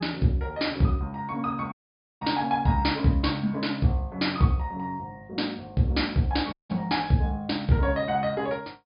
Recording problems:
treble missing; nothing above 5.1 kHz
audio cutting out; at 1.5 s and at 6.5 s

